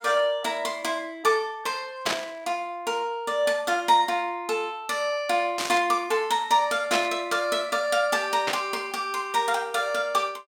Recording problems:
burst of static; 4 times, first at 2 s; peak +3 dB vs average level

